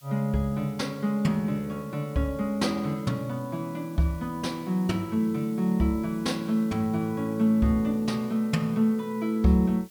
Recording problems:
hiss; slope +3 dB per octave, SNR 26 dB

